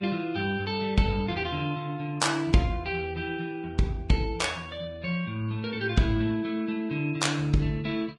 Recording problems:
codec artefacts; Vorbis, then Vorbis, log-spectral distance 3 dB, nothing above 10.1 kHz

